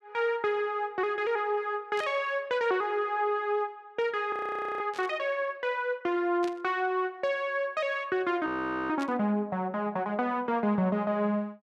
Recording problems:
static burst; 4 times, first at 2 s; peak -9 dB vs average level
frozen audio; at 4.5 s and at 8.5 s

